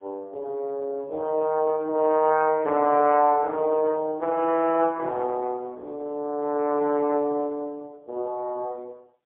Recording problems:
telephone audio; 300 Hz to 2.6 kHz, AMR-NB, then MP3

